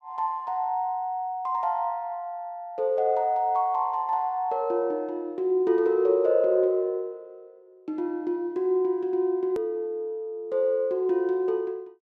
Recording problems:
click at an edit; at 9.5 s

